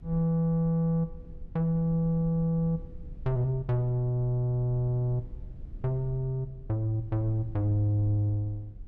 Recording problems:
rumble; below 68 Hz, SNR 17 dB

